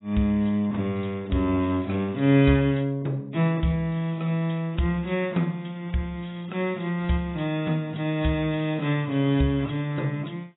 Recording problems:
lossy compression; AAC, log-spectral distance 3 dB, nothing above 3.7 kHz

